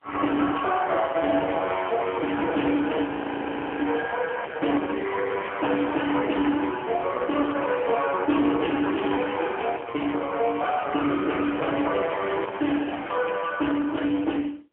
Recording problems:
phone line; 240 Hz to 3.3 kHz, AMR-NB, then MP3
distorted audio; soft clipping, signal-to-distortion ratio 11 dB
frozen audio; at 3 s for 0.5 s

